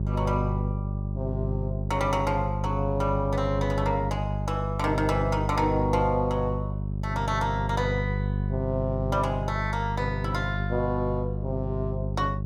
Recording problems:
hum; 50 Hz, harmonics up to 400 Hz, SNR 1 dB

